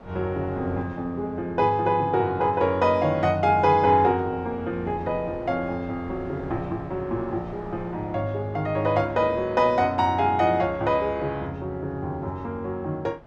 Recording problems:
wind on the microphone; below 710 Hz, SNR 21 dB

